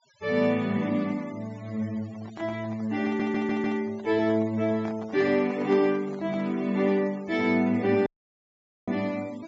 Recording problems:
low-pass filter; nothing above 7.5 kHz
denoising artefacts; signal-to-artefact ratio 24 dB
handling noise; from 2 to 6.5 s; peak -10 dB vs average level
stutter; at 3 s
dropout; at 8 s for 1 s

